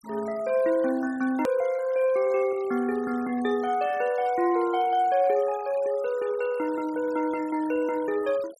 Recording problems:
noise reduction artefacts; signal-to-artefact ratio 21 dB
hard cut with a click; at 1.5 s

